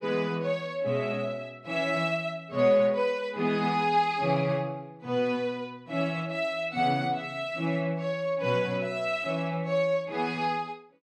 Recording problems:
none

